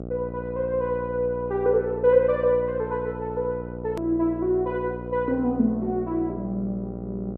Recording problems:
hum; 60 Hz, harmonics up to 840 Hz, SNR 10 dB
hard cut with a click; at 4 s

